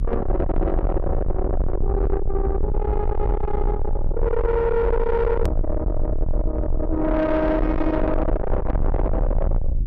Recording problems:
distortion; soft clipping, signal-to-distortion ratio 6 dB
hum; 50 Hz, harmonics up to 450 Hz, SNR 13 dB
rumble; below 86 Hz, SNR 2 dB
click at an edit; at 5.5 s

